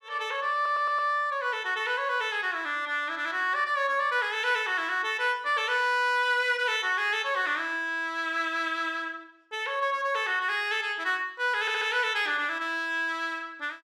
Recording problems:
audio stuttering; at 0.5 s and at 12 s

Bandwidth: 14.5 kHz